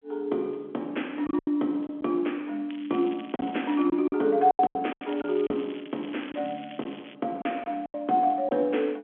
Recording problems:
telephone audio; 240 Hz to 3.7 kHz, G.711
packet loss; 8% of the sound replaced, filled with silence
crackling; from 2.5 to 4 s and from 5 to 7 s; loose cable, SNR 20 dB

